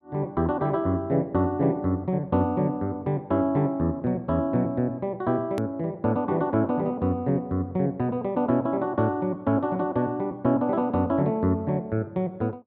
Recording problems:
click at an edit; at 5.5 s

